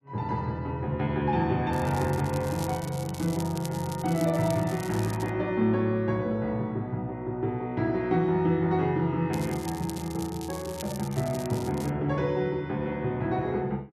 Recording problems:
crackling; from 1.5 to 5.5 s and from 9.5 to 12 s; loose cable, SNR 15 dB

